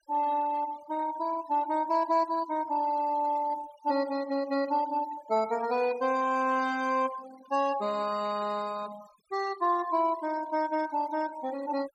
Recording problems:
noise reduction artefacts; signal-to-artefact ratio 20 dB

